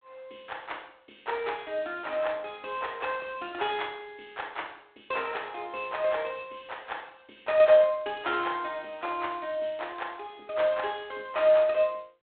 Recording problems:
telephone audio; 300 Hz to 3.6 kHz, G.726

